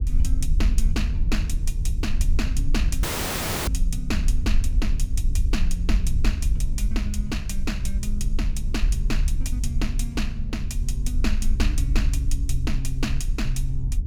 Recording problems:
rumble; below 54 Hz, SNR -4 dB
audio cutting out; at 3 s for 0.5 s

